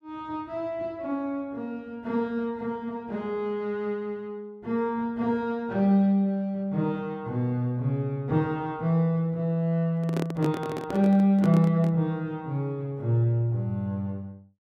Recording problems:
microphone handling noise; from 10 to 12 s; peak 0 dB vs average level

